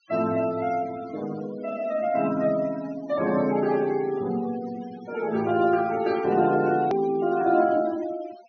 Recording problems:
treble cut off; nothing above 6.4 kHz
noise reduction artefacts; signal-to-artefact ratio 19 dB
hard cut with a click; at 7 s

